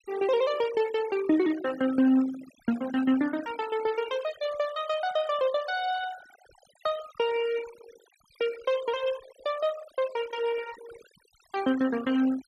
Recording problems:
denoising artefacts; signal-to-artefact ratio 16 dB

